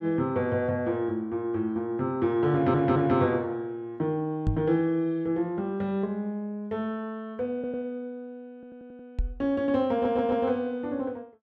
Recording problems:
audio stuttering; 4 times, first at 2.5 s
microphone thump; at 4.5 s and at 9 s; peak +4 dB vs average level

